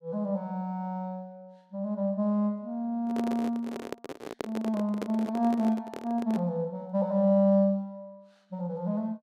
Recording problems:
handling noise; from 3 to 6.5 s; peak -1 dB vs average level

